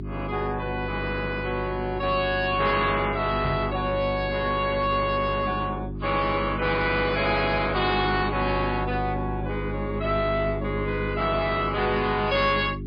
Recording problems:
lossy compression; MP3, log-spectral distance 3 dB, nothing above 4.5 kHz
distorted audio; soft clipping, signal-to-distortion ratio 10 dB
electrical hum; 50 Hz, harmonics up to 400 Hz, SNR 7 dB
microphone thump; at 3.5 s; peak +1 dB vs average level

